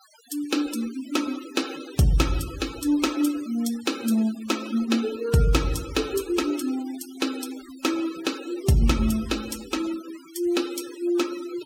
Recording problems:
noise reduction artefacts; signal-to-artefact ratio 15 dB

